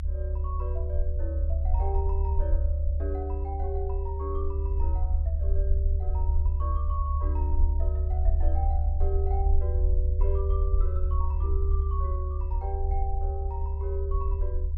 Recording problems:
rumble; below 74 Hz, SNR -10 dB

